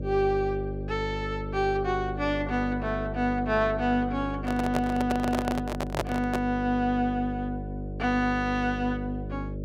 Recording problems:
electrical hum; 50 Hz, harmonics up to 600 Hz, SNR 7 dB
handling noise; from 4.5 to 6.5 s; peak +4 dB vs average level

